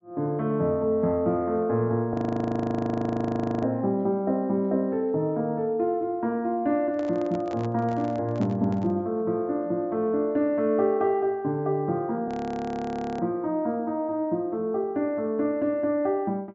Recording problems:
treble missing; nothing above 8 kHz
audio freezing; at 2 s for 1.5 s and at 12 s for 1 s
microphone handling noise; from 7 to 9 s; peak -9 dB vs average level

